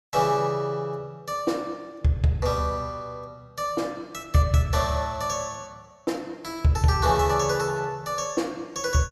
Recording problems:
none

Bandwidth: 15.5 kHz